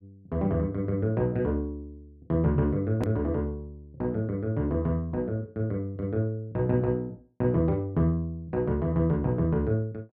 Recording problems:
hard cut with a click; at 3 s

